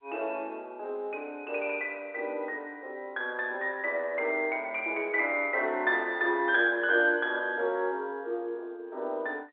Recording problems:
telephone audio; 300 Hz to 3.5 kHz, G.711

